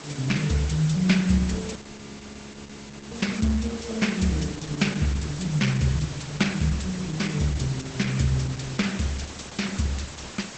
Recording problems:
lossy compression; Opus, log-spectral distance 11 dB, nothing above 8 kHz
hiss; slope -2 dB per octave, SNR 12 dB
frozen audio; at 2 s for 1.5 s

